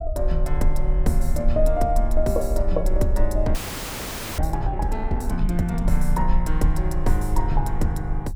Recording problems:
low-frequency rumble; below 44 Hz, strongest tone 20 Hz, SNR 1 dB
frozen audio; at 3.5 s for 1 s

